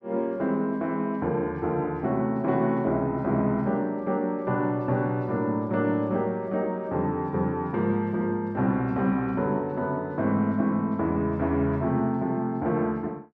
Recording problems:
none

